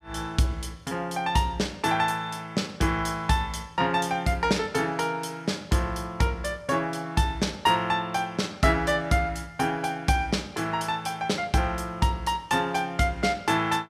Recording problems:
none

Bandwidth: 14.5 kHz